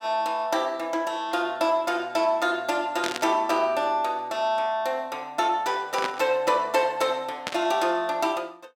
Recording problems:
static burst; at 3 s, at 6 s and at 7.5 s; peak 0 dB vs average level

